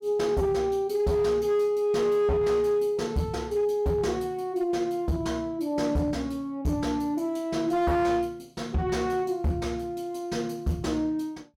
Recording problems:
distortion; hard clipping, signal-to-distortion ratio 11 dB

